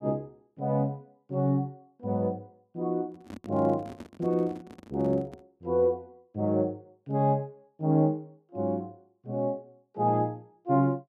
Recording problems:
microphone handling noise; from 3 to 5.5 s; peak -9 dB vs average level

